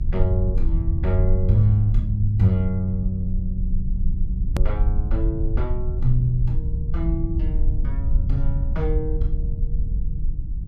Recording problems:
hum; 50 Hz, harmonics up to 350 Hz, SNR 26 dB
rumble; below 62 Hz, SNR 1 dB
hard cut with a click; at 4.5 s

